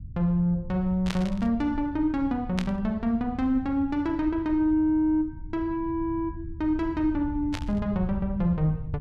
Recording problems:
low-frequency rumble; below 98 Hz, SNR 13 dB
static burst; at 1 s, at 2.5 s and at 7.5 s; peak -3 dB vs average level

